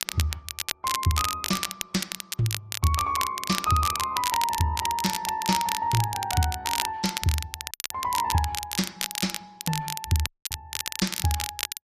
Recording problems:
lossy codec; Vorbis, then Opus, log-spectral distance 2 dB, nothing above 14.6 kHz
crackling; vinyl, SNR 3 dB
dropout; at 7.5 s and at 10 s

